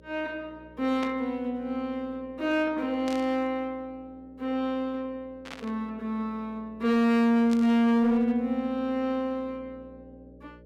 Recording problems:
distortion; hard clipping, signal-to-distortion ratio 12 dB
electrical hum; 60 Hz, harmonics up to 600 Hz, SNR 25 dB
burst of static; 4 times, first at 1 s; peak -7 dB vs average level

